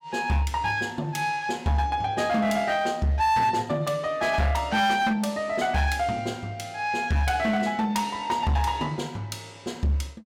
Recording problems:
distortion; hard clipping, uneven, signal-to-distortion ratio 12 dB

